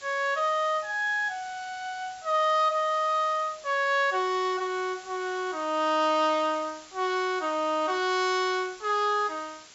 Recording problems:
low-pass filter; nothing above 8 kHz
background hiss; slope +1 dB per octave, SNR 20 dB

